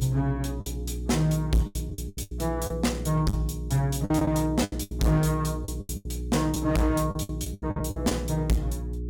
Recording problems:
distorted audio; hard clipping, signal-to-distortion ratio 6 dB
hum; 60 Hz, harmonics up to 420 Hz, SNR 7 dB
packet loss; 12% of the sound replaced, filled with the last packet

